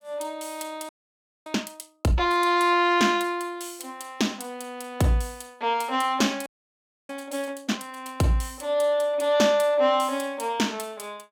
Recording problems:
audio freezing; at 1 s for 0.5 s and at 6.5 s for 0.5 s

